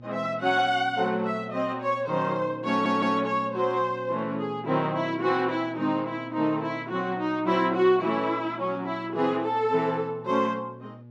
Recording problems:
electrical hum; 60 Hz, harmonics up to 840 Hz, SNR 20 dB
audio stuttering; at 2.5 s

